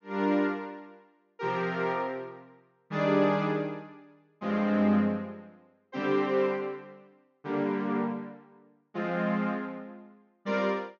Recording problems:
treble missing; nothing above 6.9 kHz

